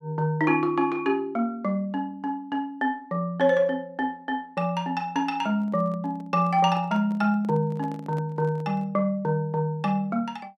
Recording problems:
microphone handling noise; from 5.5 to 9 s; peak -12 dB vs average level

